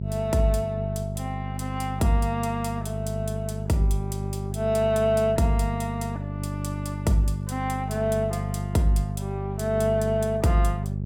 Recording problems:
hum; 50 Hz, harmonics up to 450 Hz, SNR 5 dB

